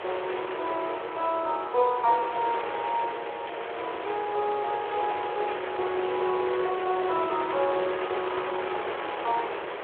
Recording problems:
telephone audio; 320 Hz to 3.7 kHz, Speex
wind on the microphone; below 1.9 kHz, SNR 6 dB

